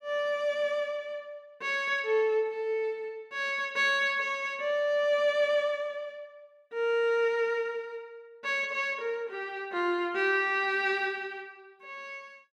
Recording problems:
none

